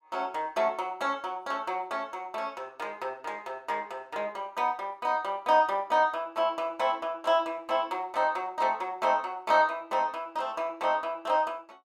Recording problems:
none

